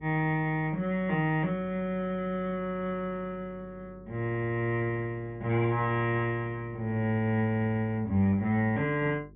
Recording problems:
treble cut off; nothing above 3.5 kHz
hum; 50 Hz, harmonics up to 450 Hz, SNR 23 dB

